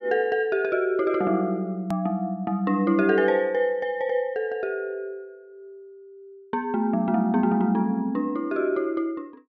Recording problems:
click at an edit; at 2 s

